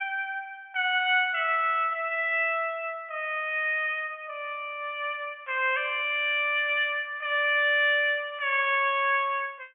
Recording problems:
treble missing; nothing above 3.2 kHz

